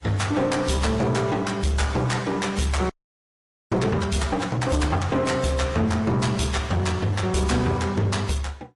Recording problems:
lossy codec; AAC, then MP3, log-spectral distance 3 dB, nothing above 11 kHz
distorted audio; soft clipping, signal-to-distortion ratio 10 dB
audio freezing; at 3 s for 1 s

